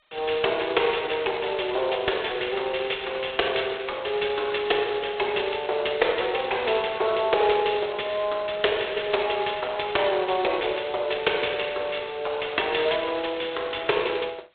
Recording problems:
telephone audio; 340 Hz to 3.9 kHz, G.726

